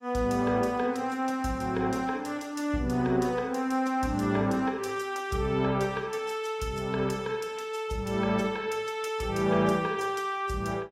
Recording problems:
lossy compression; AAC, log-spectral distance 3 dB, nothing above 15.1 kHz

